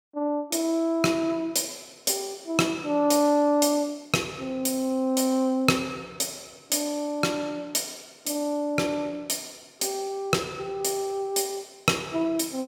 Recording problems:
none

